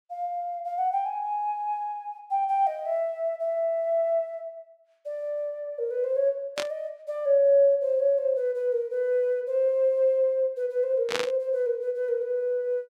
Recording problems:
burst of static; at 6.5 s and at 11 s; peak +2 dB vs average level

